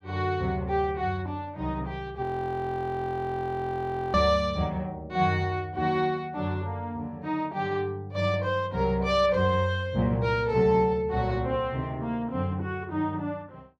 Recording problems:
audio freezing; at 2 s for 2 s

